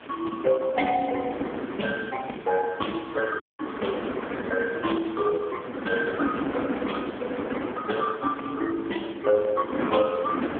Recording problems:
phone line; 220 Hz to 3.5 kHz, AMR-NB
hiss; SNR 21 dB
wind noise; below 910 Hz, SNR 7 dB
dropout; at 3.5 s

